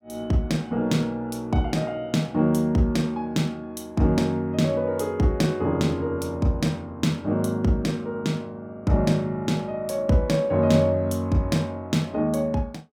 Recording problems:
none

